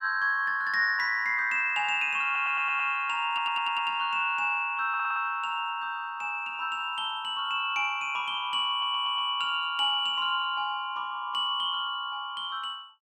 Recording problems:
stutter; 4 times, first at 2.5 s

